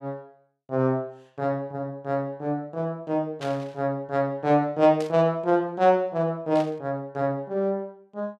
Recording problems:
static burst; at 3.5 s, at 5 s and at 6.5 s; peak -9 dB vs average level

